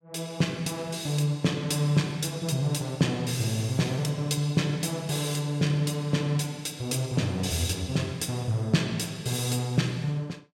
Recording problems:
none

